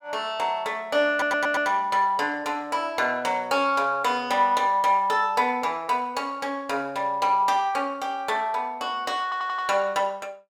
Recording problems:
stutter; at 1 s and at 9 s

